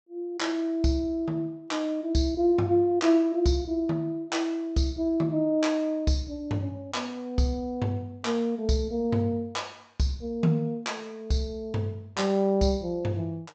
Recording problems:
treble missing; nothing above 8 kHz

